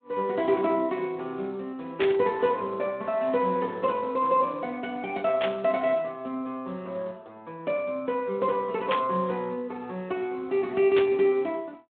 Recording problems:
telephone audio; 280 Hz to 3.7 kHz, Speex
burst of static; 4 times, first at 2 s; peak +1 dB vs average level

